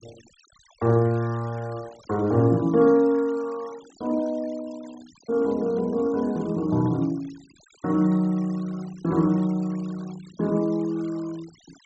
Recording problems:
low-pass filter; nothing above 8 kHz
noise reduction artefacts; signal-to-artefact ratio 25 dB

